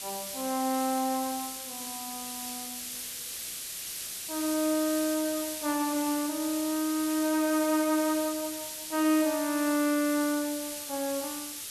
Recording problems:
background hiss; SNR 6 dB

